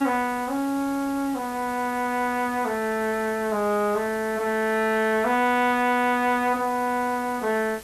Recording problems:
hiss; slope -2 dB per octave, SNR 18 dB

